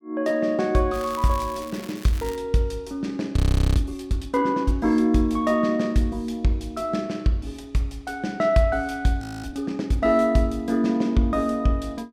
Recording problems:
crackling; from 1 to 2.5 s; loose cable, SNR 18 dB
audio freezing; at 3.5 s and at 9 s

